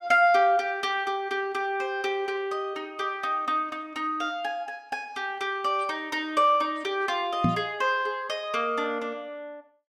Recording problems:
microphone thump; at 7.5 s; peak +6 dB vs average level

